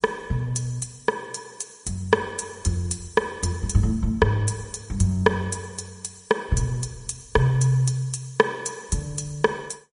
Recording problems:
codec artefacts; MP3, log-spectral distance 4 dB, nothing above 10.1 kHz

